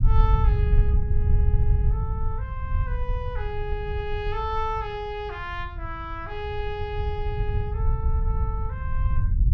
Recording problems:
rumble; below 84 Hz, SNR -7 dB

